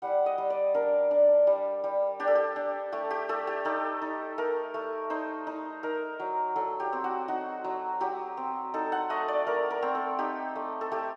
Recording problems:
none

